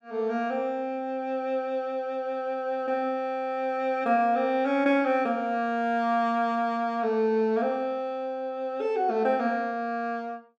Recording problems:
none

